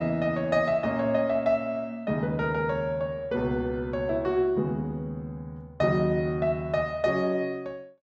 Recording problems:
none

